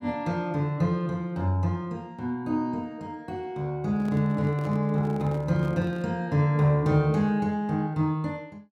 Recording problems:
handling noise; from 4 to 6 s; peak -10 dB vs average level

